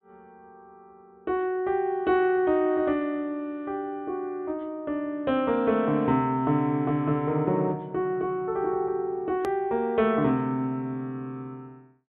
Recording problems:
low-pass filter; nothing above 4 kHz
click at an edit; at 9.5 s

